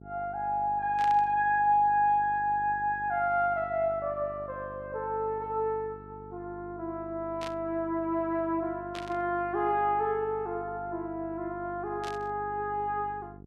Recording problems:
hum; 50 Hz, harmonics up to 800 Hz, SNR 19 dB
static burst; 4 times, first at 1 s; peak -8 dB vs average level

